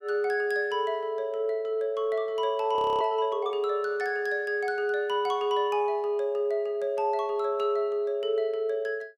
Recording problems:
audio freezing; at 3 s

